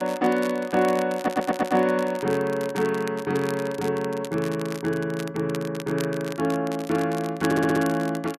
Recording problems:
crackle; vinyl, SNR 16 dB
stutter; at 1 s and at 7.5 s

